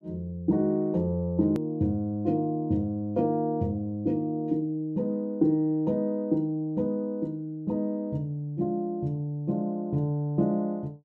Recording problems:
click at an edit; at 1.5 s

